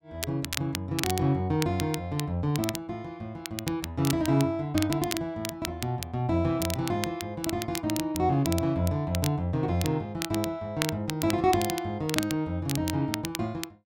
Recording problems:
crackle; vinyl, SNR 8 dB

